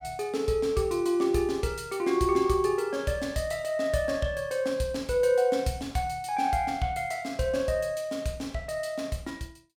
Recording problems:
none

